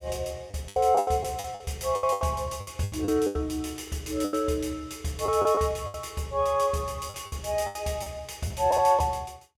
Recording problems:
packet loss; 13% of the sound replaced, filled with the last packet

